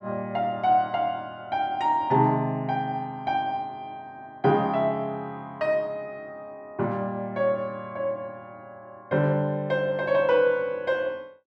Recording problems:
none

